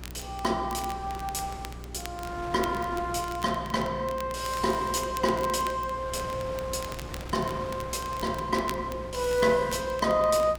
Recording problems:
hum; 60 Hz, harmonics up to 420 Hz, SNR 15 dB
wind noise; below 1.3 kHz, SNR 15 dB
crackling; vinyl, SNR 17 dB

